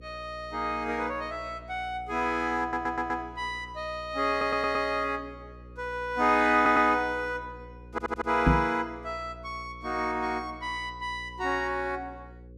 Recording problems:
hum; 60 Hz, harmonics up to 540 Hz, SNR 19 dB
audio stuttering; 4 times, first at 2.5 s
microphone thump; at 8.5 s; peak +9 dB vs average level

